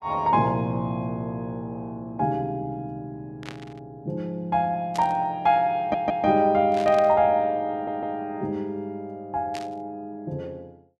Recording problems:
burst of static; 4 times, first at 3.5 s; peak -8 dB vs average level
stutter; at 6 s and at 7.5 s

